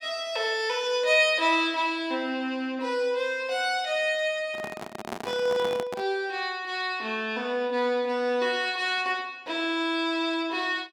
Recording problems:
microphone handling noise; from 4.5 to 6 s; peak -4 dB vs average level

